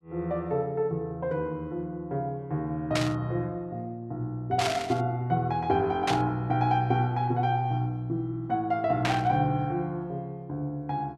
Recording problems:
static burst; 4 times, first at 3 s; peak +3 dB vs average level

